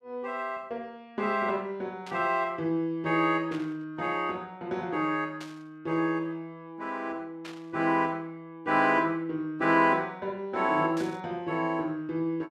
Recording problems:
static burst; 5 times, first at 2 s; peak -10 dB vs average level

